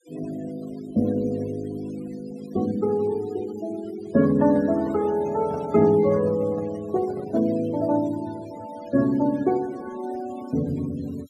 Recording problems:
denoising artefacts; signal-to-artefact ratio 20 dB
microphone handling noise; from 4 to 7.5 s; peak -9 dB vs average level

